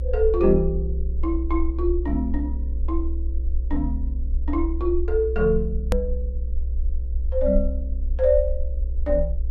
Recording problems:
hum; 60 Hz, harmonics up to 540 Hz, SNR 25 dB
low-frequency rumble; below 62 Hz, SNR 2 dB
edit click; at 6 s

